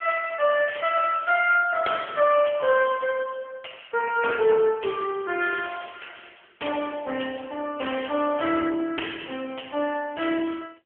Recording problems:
phone line; 300 Hz to 3.3 kHz, AMR-NB

